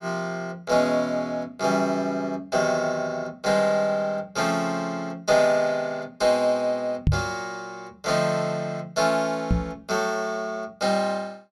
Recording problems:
knock on the microphone; at 7 s and at 9.5 s; peak +7 dB vs average level

